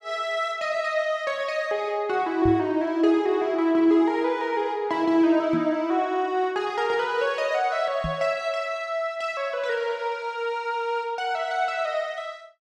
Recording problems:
microphone bump; at 2.5 s, at 5.5 s and at 8 s; peak -2 dB vs average level

